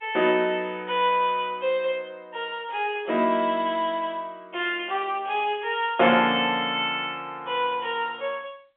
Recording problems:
telephone audio; 280 Hz to 3.4 kHz, G.711

